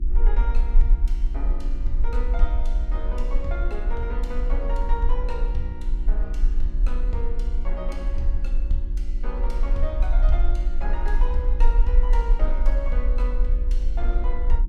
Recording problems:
hum; 60 Hz, harmonics up to 360 Hz, SNR 9 dB
rumble; below 42 Hz, strongest tone 22 Hz, SNR -9 dB

